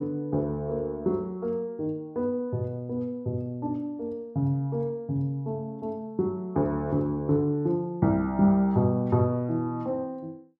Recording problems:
none

